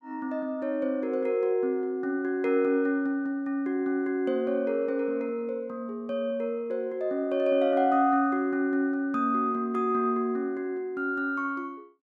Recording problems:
none

